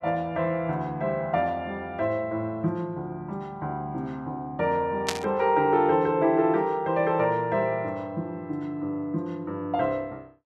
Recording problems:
static burst; at 5 s; peak +4 dB vs average level

